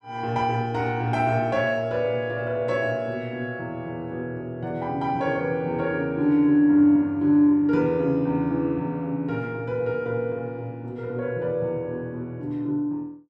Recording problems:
none

